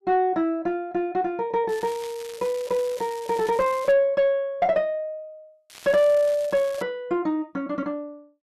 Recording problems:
distortion; soft clipping, signal-to-distortion ratio 10 dB
crackling; from 1.5 to 4 s and from 5.5 to 7 s; loose cable, SNR 19 dB

